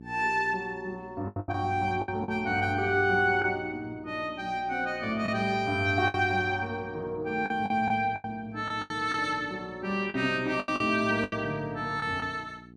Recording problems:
hum; 60 Hz, harmonics up to 480 Hz, SNR 19 dB
lost packets; 8% of the sound replaced, filled with the last packet

